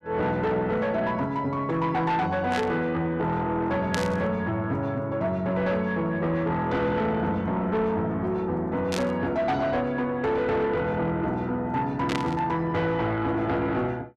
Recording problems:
distortion; soft clipping, signal-to-distortion ratio 11 dB
burst of static; 4 times, first at 2.5 s; peak -1 dB vs average level

